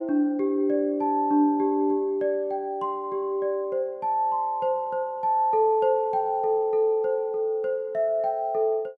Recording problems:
none

